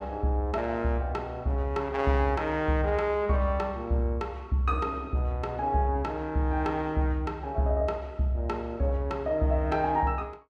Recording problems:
none

